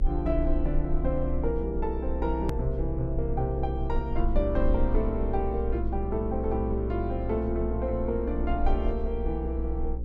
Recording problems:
hum; 60 Hz, harmonics up to 540 Hz, SNR 13 dB
rumble; below 62 Hz, SNR 2 dB
hard cut with a click; at 2.5 s

